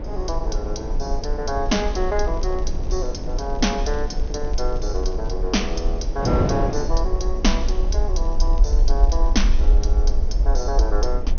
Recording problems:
treble missing; nothing above 6.4 kHz
rumble; below 48 Hz, SNR -2 dB
wind on the microphone; below 450 Hz, SNR 4 dB
crackling; from 1.5 to 5.5 s and from 8 to 9.5 s; loose cable, SNR 26 dB

